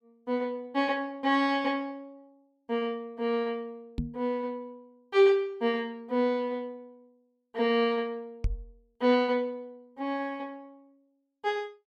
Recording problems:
microphone thump; at 4 s and at 8.5 s; peak +2 dB vs average level

